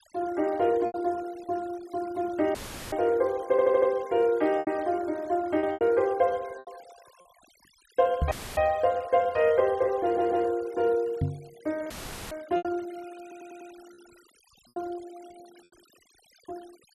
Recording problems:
noise reduction artefacts; signal-to-artefact ratio 25 dB
packet loss; 5% of the sound replaced, filled with repeated pitch periods
audio cutting out; at 2.5 s, at 8.5 s and at 12 s; filled with static
stutter; at 3.5 s, at 10 s and at 13 s
microphone bump; at 8 s and at 11 s; peak +3 dB vs average level

